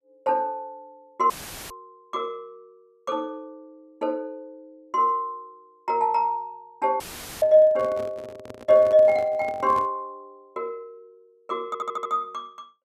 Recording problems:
dropout; at 1.5 s and at 7 s; filled with static
handling noise; from 7.5 to 10 s; peak -10 dB vs average level
audio stuttering; at 12 s

